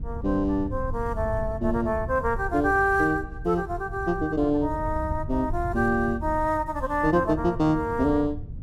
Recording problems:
wind on the microphone; below 100 Hz, SNR 10 dB

